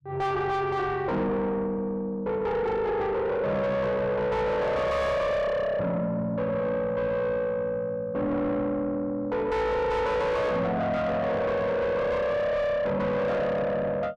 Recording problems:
distorted audio; soft clipping, signal-to-distortion ratio 6 dB

